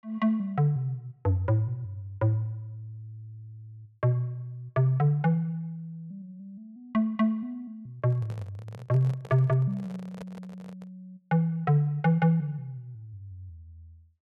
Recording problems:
handling noise; from 8 to 11 s; peak -12 dB vs average level

